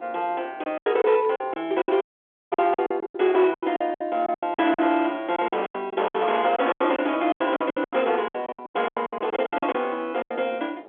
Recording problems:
phone line; 280 Hz to 3.4 kHz, G.711
distortion; hard clipping, signal-to-distortion ratio 14 dB
wind on the microphone; below 930 Hz, SNR 21 dB
packet loss; 20% of the sound replaced, filled with silence
audio cutting out; at 2 s for 0.5 s

